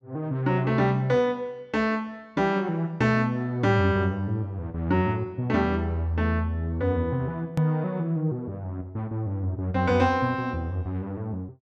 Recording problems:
click at an edit; at 7.5 s

